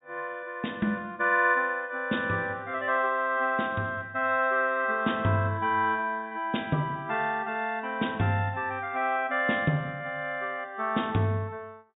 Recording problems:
low-pass filter; nothing above 4 kHz

